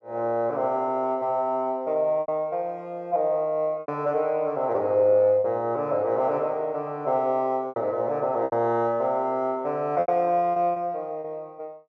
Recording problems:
lost packets; 5% of the sound replaced, filled with repeated pitch periods

